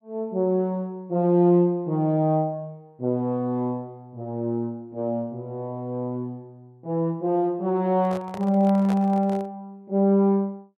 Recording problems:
handling noise; from 8 to 9.5 s; peak -7 dB vs average level

